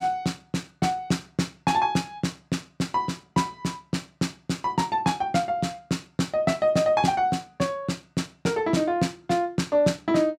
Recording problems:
none

